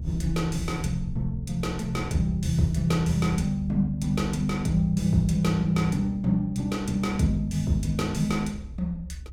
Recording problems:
low-frequency rumble; below 74 Hz, SNR 13 dB

